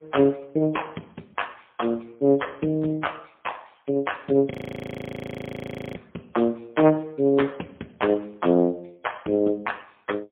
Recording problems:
phone line; 190 Hz to 3.4 kHz, AMR-NB, then MP3
frozen audio; at 4.5 s for 1.5 s

